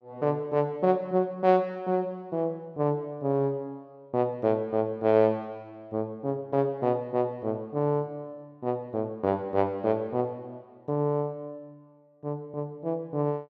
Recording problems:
none

